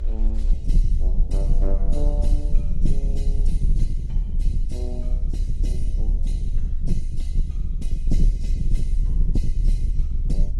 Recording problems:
codec artefacts; Opus, then AAC, log-spectral distance 2 dB, nothing above 11.6 kHz
low-frequency rumble; below 38 Hz, SNR -15 dB

